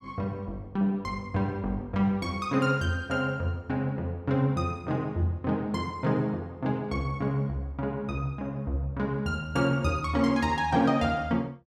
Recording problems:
none

